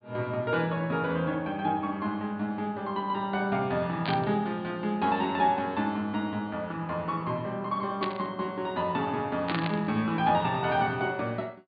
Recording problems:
low-pass filter; nothing above 4.7 kHz
burst of static; at 4 s, at 8 s and at 9.5 s; peak 0 dB vs average level

